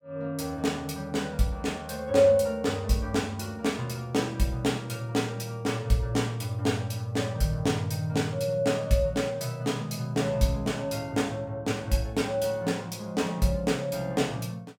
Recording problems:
none

